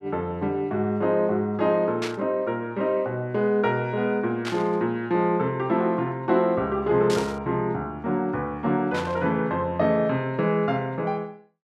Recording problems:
static burst; 4 times, first at 2 s; peak -3 dB vs average level

